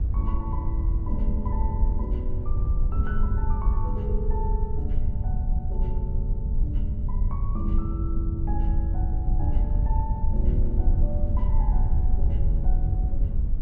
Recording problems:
rumble; below 74 Hz, SNR -7 dB
wind on the microphone; below 68 Hz, SNR -8 dB

